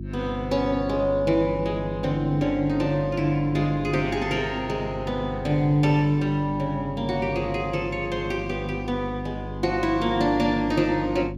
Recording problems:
hum; 50 Hz, harmonics up to 350 Hz, SNR 10 dB

